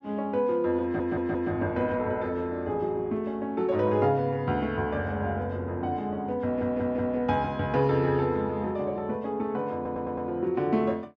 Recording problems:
audio stuttering; at 1 s, at 6.5 s and at 10 s

